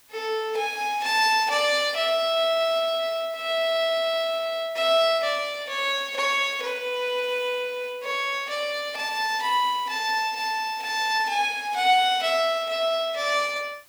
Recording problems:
background hiss; slope +1 dB per octave, SNR 27 dB

